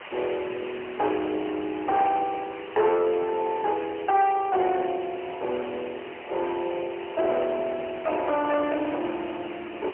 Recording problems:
phone line; 320 Hz to 3.1 kHz, AMR-NB, then MP3
distortion; hard clipping, uneven, signal-to-distortion ratio 11 dB
background hiss; SNR 15 dB

